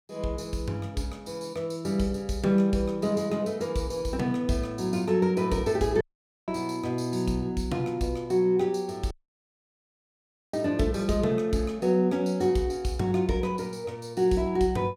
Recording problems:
audio cutting out; at 6 s and at 9 s for 1.5 s

